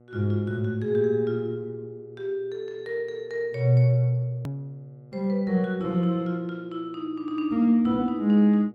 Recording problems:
hum; 60 Hz, harmonics up to 1.3 kHz, SNR 29 dB
hard cut with a click; at 4.5 s

